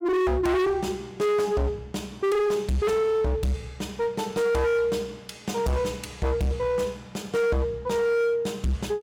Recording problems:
distorted audio; hard clipping, signal-to-distortion ratio 6 dB

